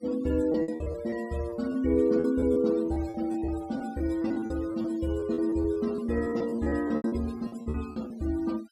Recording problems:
noise reduction artefacts; signal-to-artefact ratio 20 dB
lost packets; 15% of the sound replaced, filled with repeated pitch periods

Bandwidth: 15.5 kHz